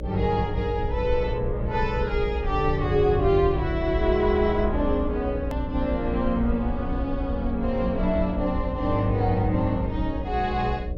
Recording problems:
low-pass filter; nothing above 8 kHz
electrical hum; 60 Hz, harmonics up to 600 Hz, SNR 11 dB
rumble; below 66 Hz, SNR 7 dB
click at an edit; at 5.5 s

